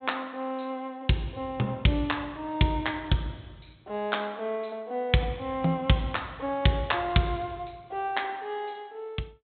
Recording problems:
low-pass filter; nothing above 4 kHz

